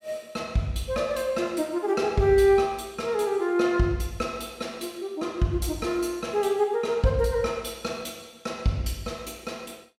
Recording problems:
none

